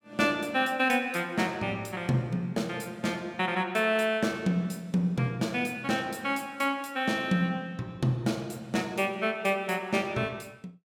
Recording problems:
none

